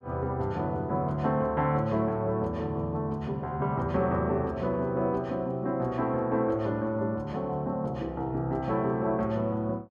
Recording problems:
none

